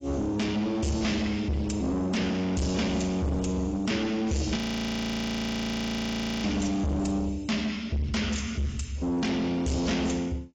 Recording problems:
codec artefacts; AAC, log-spectral distance 3 dB, nothing above 18.9 kHz
distorted audio; soft clipping, signal-to-distortion ratio 6 dB
audio freezing; at 4.5 s for 2 s

